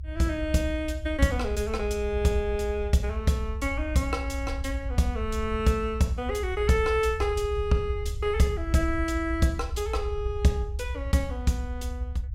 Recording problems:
rumble; below 74 Hz, strongest tone 60 Hz, SNR 6 dB

